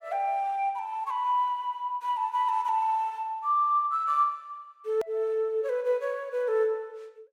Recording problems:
click at an edit; at 5 s

